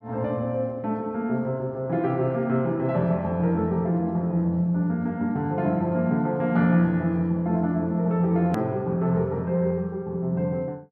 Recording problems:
hard cut with a click; at 8.5 s

